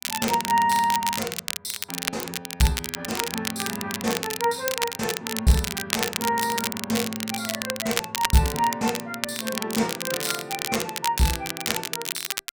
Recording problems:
crackle; vinyl, SNR 2 dB

